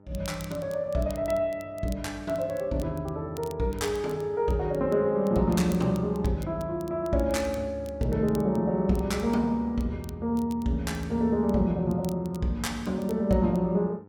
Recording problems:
hum; 50 Hz, harmonics up to 1.4 kHz, SNR 26 dB
crackling; vinyl, SNR 24 dB

